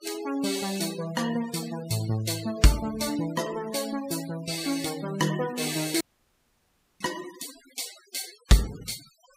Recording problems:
denoising artefacts; signal-to-artefact ratio 14 dB
audio cutting out; at 6 s for 1 s

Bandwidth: 15.5 kHz